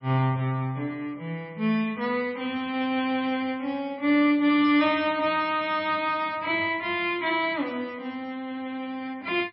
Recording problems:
lossy compression; MP3, log-spectral distance 2 dB, nothing above 4.8 kHz

